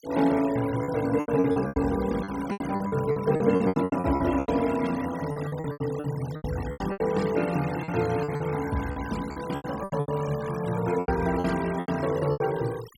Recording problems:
noise reduction artefacts; signal-to-artefact ratio 15 dB
lost packets; 16% of the sound replaced, filled with repeated pitch periods

